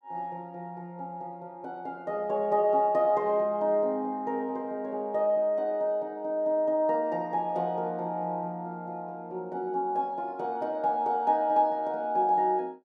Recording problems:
none

